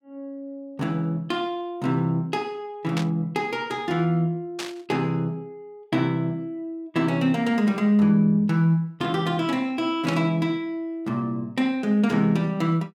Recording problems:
static burst; at 3 s, at 4.5 s and at 10 s; peak -3 dB vs average level

